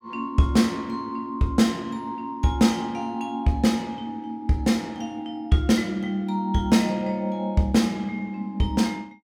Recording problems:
none

